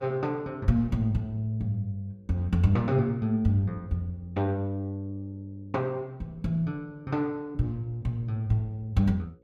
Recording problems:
hum; 60 Hz, harmonics up to 540 Hz, SNR 32 dB

